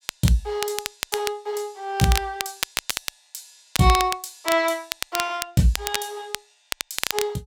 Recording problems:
crackle; vinyl, SNR 5 dB

